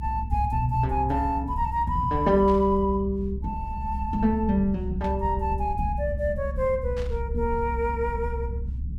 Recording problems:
low-frequency rumble; below 70 Hz, strongest tone 66 Hz, SNR 6 dB
static burst; at 2.5 s, at 5 s and at 7 s; peak -13 dB vs average level

